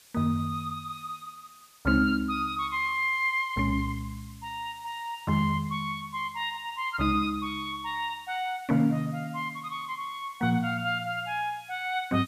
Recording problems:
hiss; slope +2 dB per octave, SNR 24 dB

